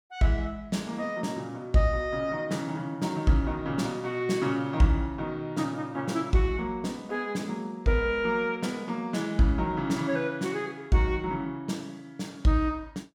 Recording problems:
none

